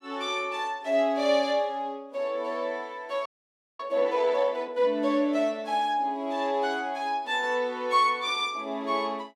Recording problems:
audio freezing; at 3.5 s for 0.5 s

